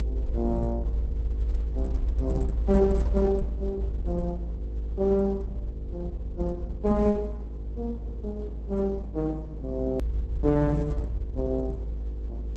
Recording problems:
codec artefacts; Opus, log-spectral distance 2 dB
mains hum; 50 Hz, harmonics up to 800 Hz, SNR 17 dB
rumble; below 58 Hz, strongest tone 54 Hz, SNR 6 dB
click at an edit; at 10 s

